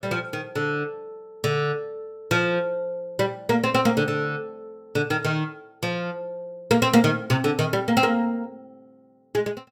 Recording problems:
none

